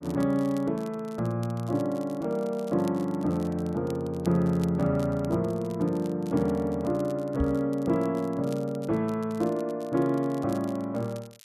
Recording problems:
crackling; vinyl, SNR 25 dB
microphone bump; at 7.5 s; peak +2 dB vs average level

